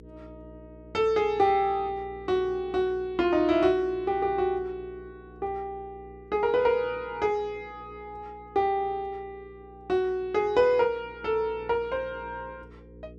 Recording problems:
hum; 60 Hz, harmonics up to 480 Hz, SNR 22 dB

